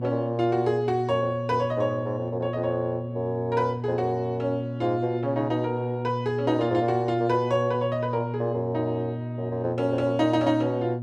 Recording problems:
electrical hum; 60 Hz, harmonics up to 600 Hz, SNR 6 dB

